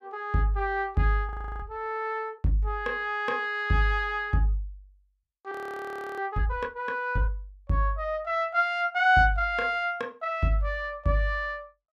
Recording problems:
frozen audio; at 1.5 s and at 5.5 s for 0.5 s

